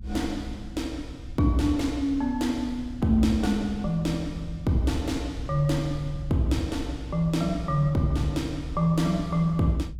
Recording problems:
rumble; below 96 Hz, SNR 12 dB

